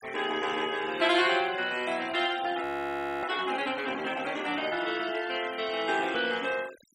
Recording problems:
noise reduction artefacts; signal-to-artefact ratio 16 dB
frozen audio; at 2.5 s for 0.5 s

